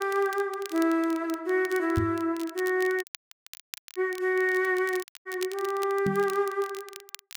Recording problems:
crackling; vinyl, SNR 17 dB
microphone thump; at 2 s and at 6 s; peak +3 dB vs average level
audio cutting out; at 3 s for 1 s and at 5 s

